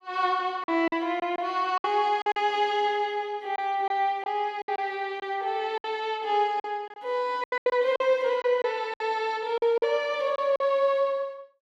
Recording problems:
packet loss; 9% of the sound replaced, filled with silence

